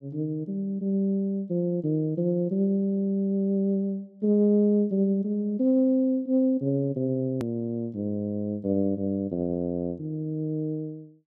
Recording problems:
hard cut with a click; at 7.5 s

